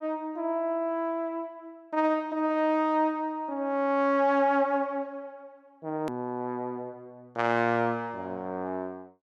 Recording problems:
hard cut with a click; at 6 s

